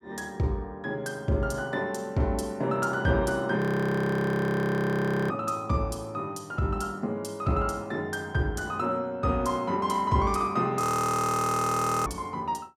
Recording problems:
audio freezing; at 3.5 s for 1.5 s and at 11 s for 1.5 s

